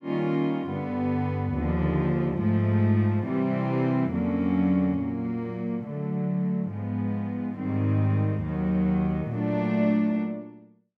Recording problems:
none

